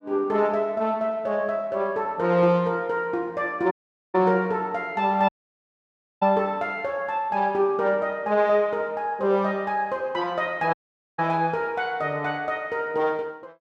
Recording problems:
audio cutting out; at 3.5 s, at 5.5 s for 1 s and at 11 s

